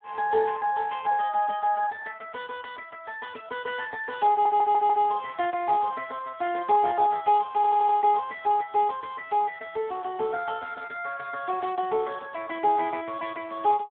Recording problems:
telephone audio; 280 Hz to 3 kHz, Speex
audio stuttering; at 4.5 s and at 7.5 s

